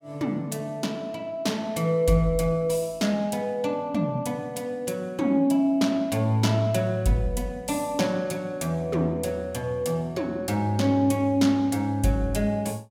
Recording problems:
none

